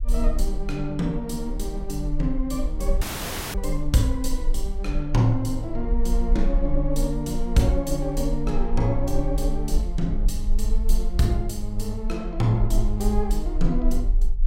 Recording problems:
low-frequency rumble; below 40 Hz, strongest tone 22 Hz, SNR 2 dB
audio cutting out; at 3 s for 0.5 s

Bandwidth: 16 kHz